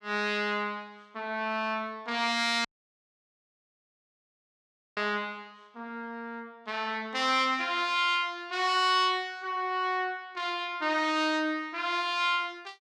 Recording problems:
audio cutting out; at 2.5 s for 2.5 s

